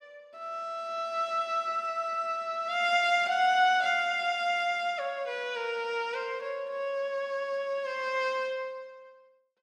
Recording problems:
none

